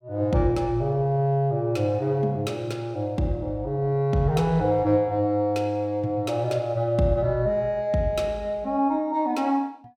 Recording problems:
none

